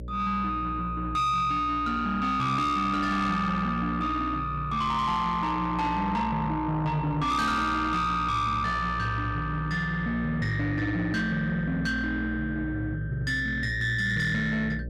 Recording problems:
distortion; soft clipping, signal-to-distortion ratio 10 dB
hum; 60 Hz, harmonics up to 600 Hz, SNR 11 dB

